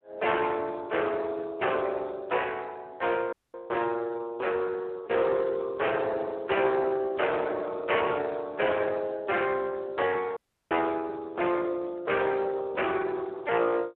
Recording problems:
phone line; 300 Hz to 3.2 kHz, Speex
distorted audio; hard clipping, uneven, signal-to-distortion ratio 9 dB
dropout; at 3.5 s and at 10 s

